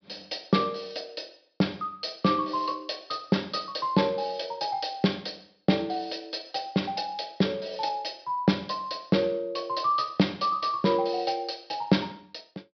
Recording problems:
low-pass filter; nothing above 5.5 kHz

